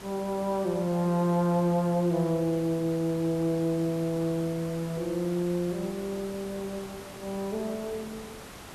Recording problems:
background hiss; slope -4 dB per octave, SNR 15 dB

